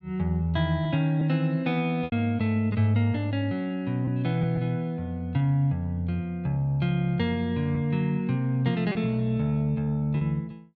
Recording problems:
packet loss; 2% of the sound replaced, filled with repeated pitch periods

